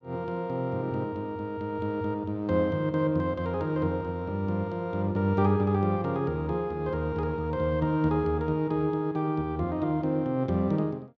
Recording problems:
none

